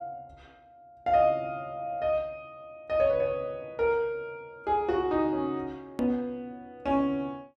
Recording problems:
click at an edit; at 6 s

